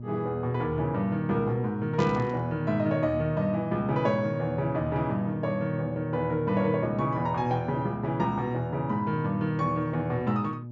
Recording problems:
treble cut off; nothing above 8 kHz
hum; 60 Hz, harmonics up to 600 Hz, SNR 9 dB
burst of static; at 2 s; peak -8 dB vs average level

